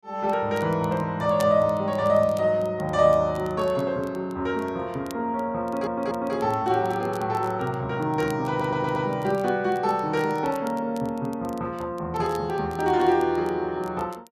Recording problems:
crackle; vinyl, SNR 26 dB
audio stuttering; at 5.5 s and at 8.5 s

